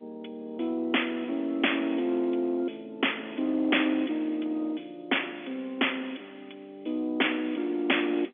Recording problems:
phone line; 220 Hz to 3.5 kHz, G.711
distortion; soft clipping, signal-to-distortion ratio 12 dB

